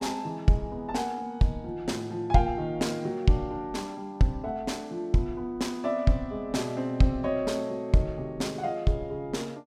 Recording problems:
none

